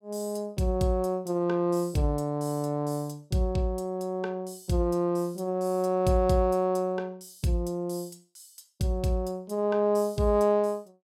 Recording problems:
none

